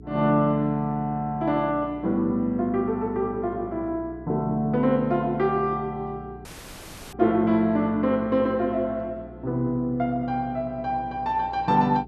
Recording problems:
hum; 60 Hz, harmonics up to 420 Hz, SNR 19 dB
audio cutting out; at 6.5 s for 0.5 s

